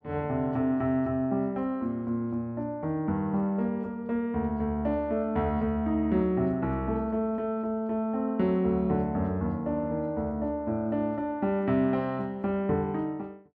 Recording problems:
none

